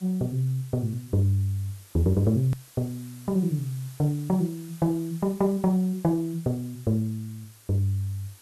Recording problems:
background hiss; slope 0 dB per octave, SNR 23 dB
edit click; at 2.5 s

